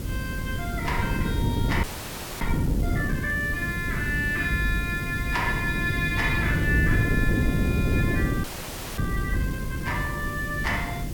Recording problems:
electrical hum; 50 Hz, harmonics up to 350 Hz, SNR 8 dB
background hiss; slope -2 dB per octave, SNR 13 dB
wind noise; below 240 Hz, SNR 0 dB
audio freezing; at 2 s for 0.5 s and at 8.5 s for 0.5 s

